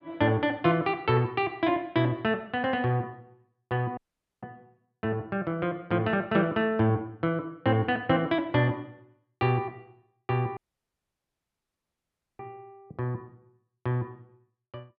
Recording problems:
audio cutting out; at 4 s and at 11 s for 2 s

